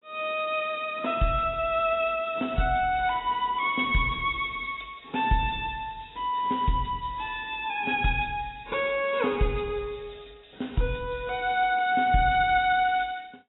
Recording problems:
lossy compression; AAC, log-spectral distance 6 dB, nothing above 3.8 kHz

